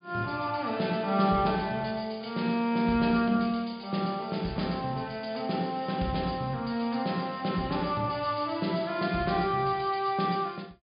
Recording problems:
treble missing; nothing above 4.9 kHz

